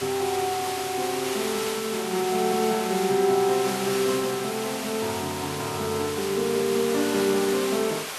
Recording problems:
background hiss; slope -1 dB per octave, SNR 6 dB

